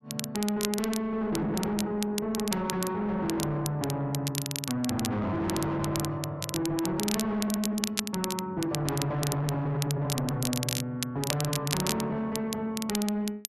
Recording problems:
distorted audio; soft clipping, signal-to-distortion ratio 7 dB
crackle; vinyl, SNR 5 dB

